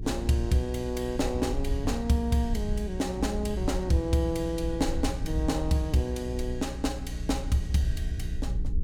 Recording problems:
hum; 60 Hz, harmonics up to 480 Hz, SNR 10 dB
low-frequency rumble; below 74 Hz, SNR 8 dB

